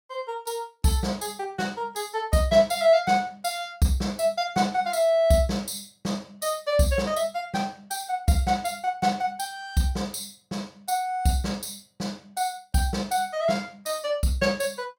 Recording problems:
none

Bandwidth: 16.5 kHz